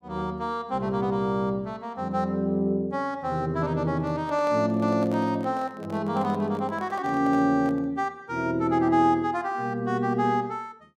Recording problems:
microphone handling noise; from 4 to 8 s; peak -11 dB vs average level

